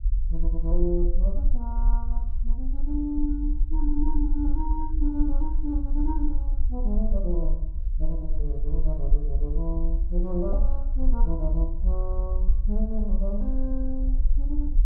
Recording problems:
rumble; below 44 Hz, strongest tone 20 Hz, SNR -5 dB

